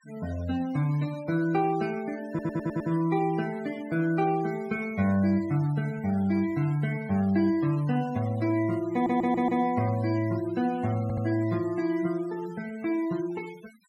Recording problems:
denoising artefacts; signal-to-artefact ratio 21 dB
audio stuttering; at 2.5 s, at 9 s and at 11 s

